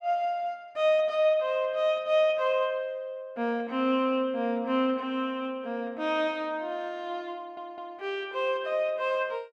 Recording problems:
audio stuttering; at 7.5 s

